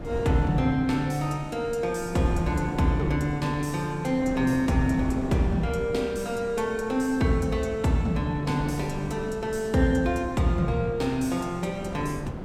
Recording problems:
wind noise; below 380 Hz, SNR 12 dB

